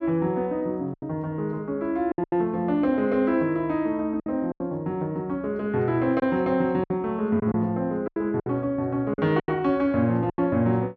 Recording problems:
lost packets; 7% of the sound replaced, filled with silence

